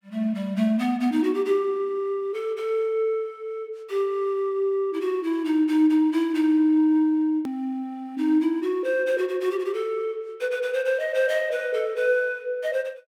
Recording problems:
click at an edit; at 7.5 s

